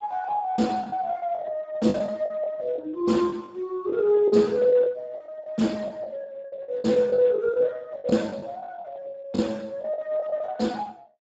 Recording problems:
codec artefacts; Speex, log-spectral distance 3 dB, nothing above 7.3 kHz
packet loss; 11% of the sound replaced, filled with the last packet

